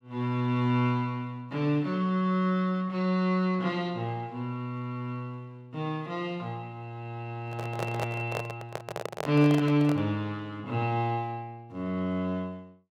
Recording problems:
microphone handling noise; from 7.5 to 10 s; peak 0 dB vs average level

